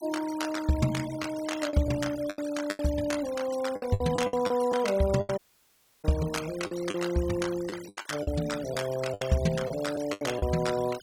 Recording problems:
denoising artefacts; signal-to-artefact ratio 15 dB
lost packets; 9% of the sound replaced, filled with the last packet
dropout; at 5.5 s for 0.5 s

